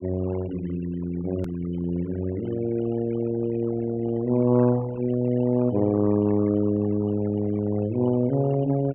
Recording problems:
treble cut off; nothing above 3.1 kHz
denoising artefacts; signal-to-artefact ratio 19 dB
click at an edit; at 1.5 s

